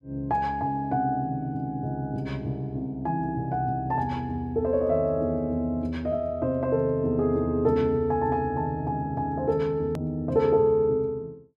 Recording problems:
edit click; at 10 s

